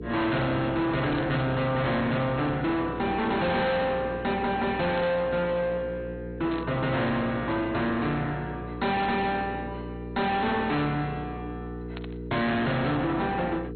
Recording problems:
codec artefacts; MP2, log-spectral distance 2 dB, nothing above 4.2 kHz
distorted audio; hard clipping, uneven, signal-to-distortion ratio 6 dB
hum; 60 Hz, harmonics up to 480 Hz, SNR 11 dB
static burst; 5 times, first at 1 s; peak -10 dB vs average level

